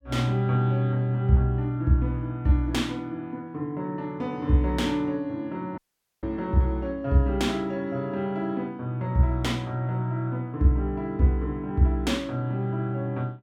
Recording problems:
dropout; at 6 s

